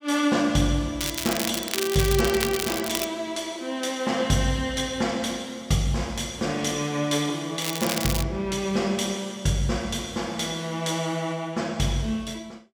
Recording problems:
crackle; from 1 to 3 s and at 7.5 s; loose cable, SNR 3 dB

